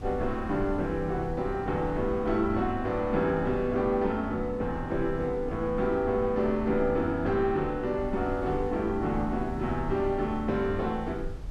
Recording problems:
wind on the microphone; below 76 Hz, SNR 13 dB

